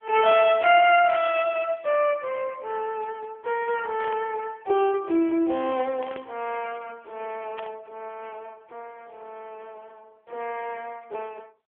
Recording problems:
phone line; 280 Hz to 3.4 kHz, AMR-NB
burst of static; at 4 s, at 6 s and at 7.5 s; peak -10 dB vs average level

